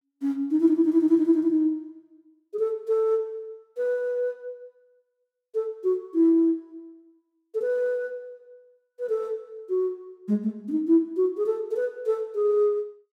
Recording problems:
none

